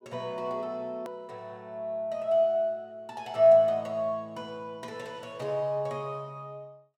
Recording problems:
hard cut with a click; at 1 s

